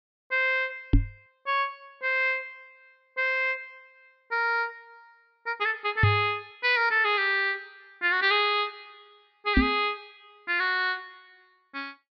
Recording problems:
treble cut off; nothing above 5.5 kHz
microphone thump; at 1 s, at 6 s and at 9.5 s; peak +8 dB vs average level

